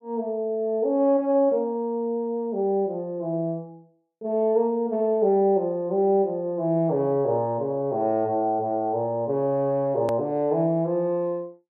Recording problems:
edit click; at 10 s

